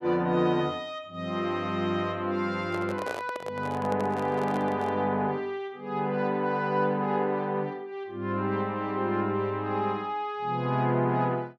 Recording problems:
microphone handling noise; from 2.5 to 5 s; peak -2 dB vs average level

